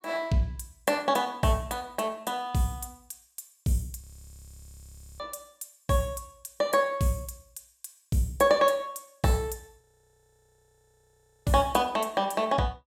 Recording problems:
frozen audio; at 4 s for 1 s and at 10 s for 1.5 s

